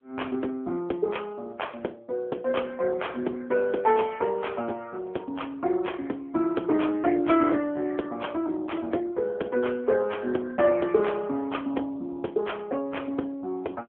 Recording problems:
telephone audio; 220 Hz to 3.4 kHz, AMR-NB

